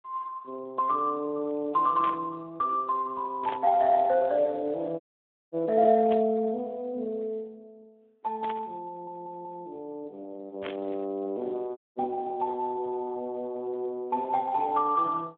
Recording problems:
telephone audio; 220 Hz to 2.1 kHz, Speex
static burst; 5 times, first at 2 s; peak -4 dB vs average level
audio cutting out; at 5 s for 0.5 s and at 12 s
audio stuttering; at 9 s

